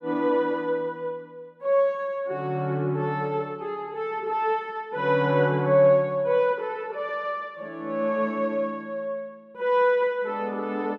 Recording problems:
none

